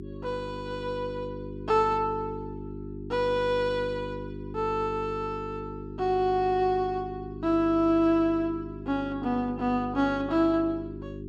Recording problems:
mains hum; 50 Hz, harmonics up to 400 Hz, SNR 11 dB

